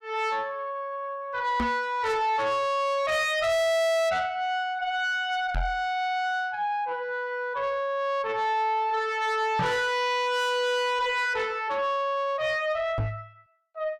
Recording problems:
distortion; soft clipping, signal-to-distortion ratio 7 dB
knock on the microphone; 4 times, first at 1.5 s; peak +2 dB vs average level

